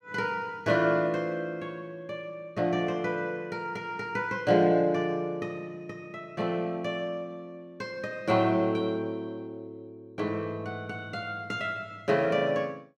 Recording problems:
none

